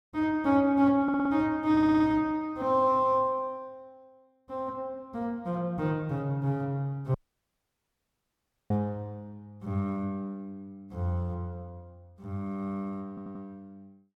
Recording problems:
stutter; at 1 s, at 1.5 s and at 13 s
audio cutting out; at 7 s for 1.5 s

